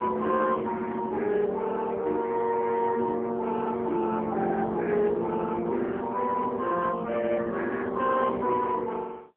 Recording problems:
telephone audio; 260 Hz to 2.6 kHz, AMR-NB

